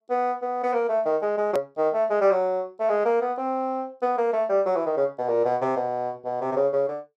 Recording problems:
hard cut with a click; at 1.5 s

